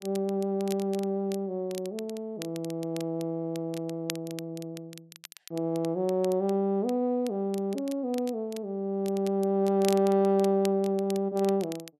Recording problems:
crackling; vinyl, SNR 17 dB

